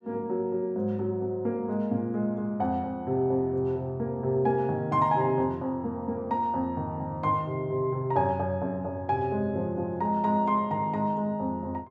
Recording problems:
none

